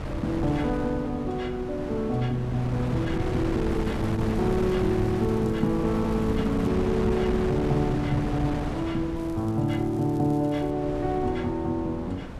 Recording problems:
wind on the microphone; below 440 Hz, SNR 5 dB
crackling; from 3.5 to 6.5 s and from 9 to 11 s; loose cable, SNR 28 dB

